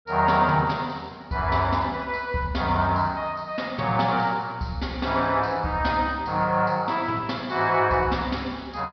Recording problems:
treble missing; nothing above 5.5 kHz

